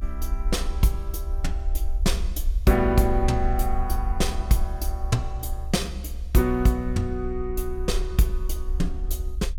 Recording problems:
rumble; below 62 Hz, SNR 4 dB

